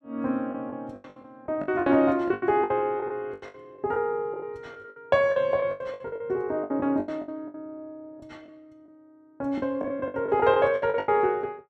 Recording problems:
packet loss; 17% of the sound replaced, filled with the last packet

